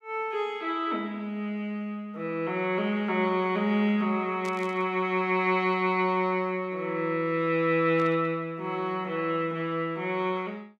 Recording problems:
static burst; at 4.5 s and at 8 s; peak -12 dB vs average level

